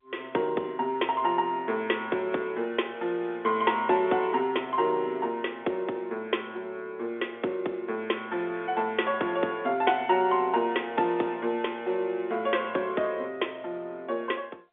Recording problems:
telephone audio; 220 Hz to 3.6 kHz, G.711

